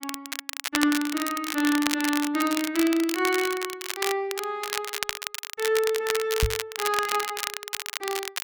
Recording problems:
crackling; vinyl, SNR 4 dB
microphone thump; at 6.5 s; peak +5 dB vs average level

